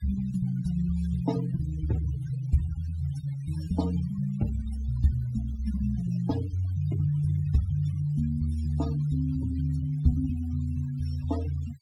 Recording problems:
denoising artefacts; signal-to-artefact ratio 17 dB

